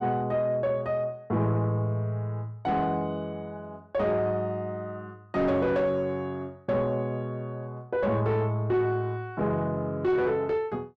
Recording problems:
distortion; soft clipping, signal-to-distortion ratio 10 dB

